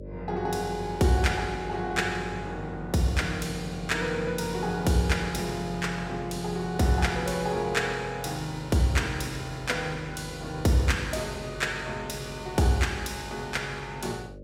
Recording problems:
hum; 50 Hz, harmonics up to 600 Hz, SNR 14 dB

